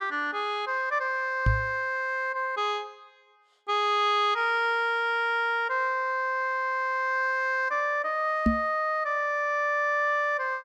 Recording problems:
knock on the microphone; at 1.5 s and at 8.5 s; peak +6 dB vs average level

